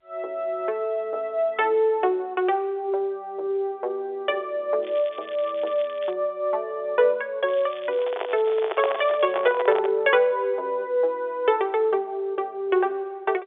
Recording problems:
telephone audio; 320 Hz to 3.9 kHz, G.711
crackling; from 5 to 6 s and from 7.5 to 9.5 s; loose cable, SNR 22 dB
handling noise; from 8 to 10 s; peak +2 dB vs average level

